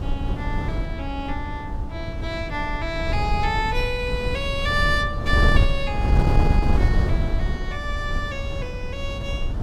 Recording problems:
wind on the microphone; below 120 Hz, SNR -2 dB

